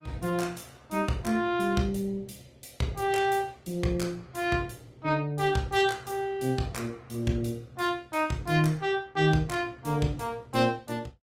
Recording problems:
codec artefacts; Opus, log-spectral distance 3 dB, nothing above 16.5 kHz

